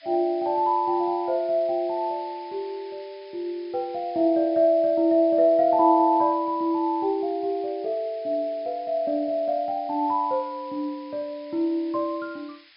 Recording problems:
low-pass filter; nothing above 5.5 kHz
background hiss; SNR 27 dB

